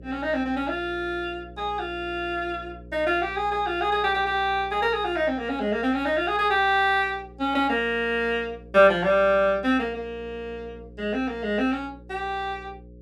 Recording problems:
electrical hum; 60 Hz, harmonics up to 540 Hz, SNR 21 dB

